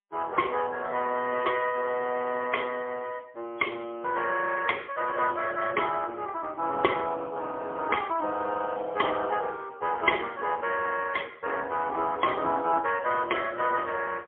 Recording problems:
phone line; 280 Hz to 3.1 kHz, AMR-NB, then MP3

